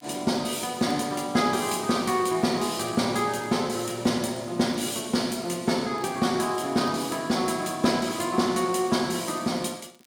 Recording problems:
crackling; vinyl, SNR 30 dB

